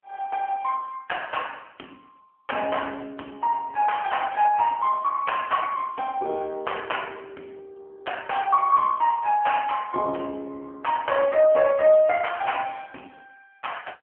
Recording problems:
telephone audio; 240 Hz to 3.3 kHz, AMR-NB

